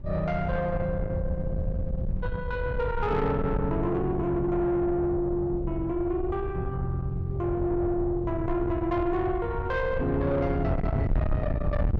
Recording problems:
distorted audio; soft clipping, signal-to-distortion ratio 8 dB
wind noise; below 140 Hz, SNR 5 dB

